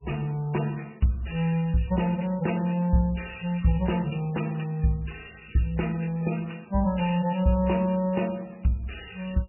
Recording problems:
lossy compression; MP3, log-spectral distance 8 dB, nothing above 2.9 kHz

